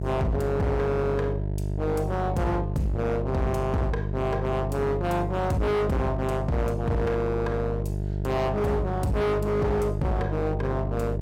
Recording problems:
distorted audio; hard clipping, signal-to-distortion ratio 7 dB
electrical hum; 50 Hz, harmonics up to 700 Hz, SNR 3 dB

